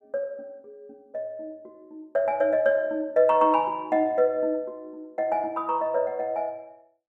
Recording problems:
none

